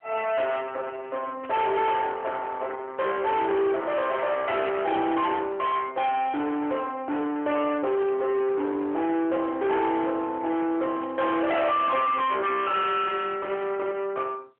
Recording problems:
phone line; 300 Hz to 3.8 kHz, AMR-NB
distortion; soft clipping, signal-to-distortion ratio 7 dB
burst of static; 4 times, first at 1.5 s; peak -13 dB vs average level

